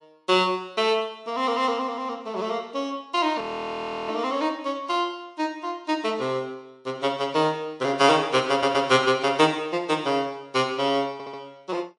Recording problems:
lossy codec; MP3, log-spectral distance 2 dB, nothing above 11 kHz
audio freezing; at 3.5 s for 0.5 s
stutter; at 8.5 s and at 11 s

